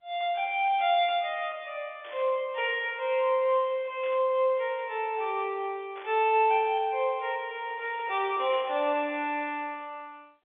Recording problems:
telephone audio; 320 Hz to 3.6 kHz, G.711
burst of static; 4 times, first at 2 s; peak -15 dB vs average level

